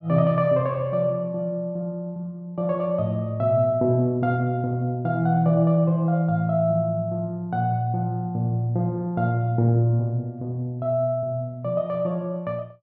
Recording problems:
none

